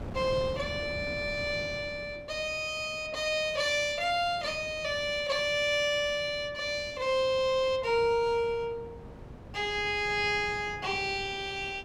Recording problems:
wind on the microphone; below 430 Hz, SNR 17 dB

